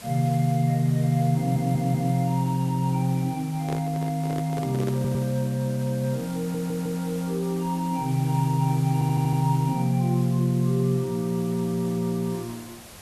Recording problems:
hiss; slope -3 dB per octave, SNR 18 dB
audio stuttering; 4 times, first at 1.5 s
handling noise; from 3.5 to 5.5 s; peak -5 dB vs average level

